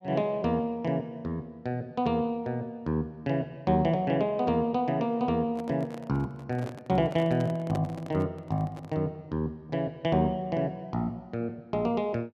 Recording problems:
microphone handling noise; from 5.5 to 9 s; peak -3 dB vs average level

